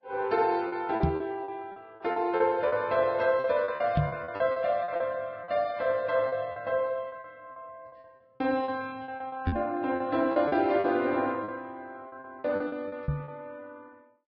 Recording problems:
codec artefacts; Vorbis, log-spectral distance 2 dB
packet loss; 13% of the sound replaced, filled with repeated pitch periods
microphone bump; 4 times, first at 1 s; peak +6 dB vs average level

